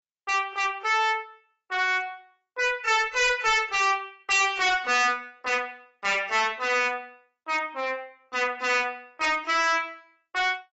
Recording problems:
codec artefacts; AAC, log-spectral distance 3 dB, nothing above 7.6 kHz
distorted audio; hard clipping, signal-to-distortion ratio 6 dB

